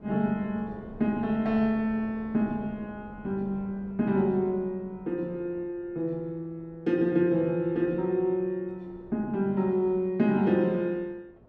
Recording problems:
wind noise; below 470 Hz, SNR 22 dB

